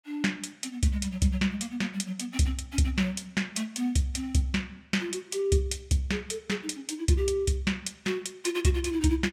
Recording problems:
none

